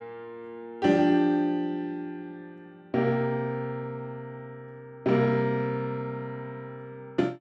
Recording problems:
none

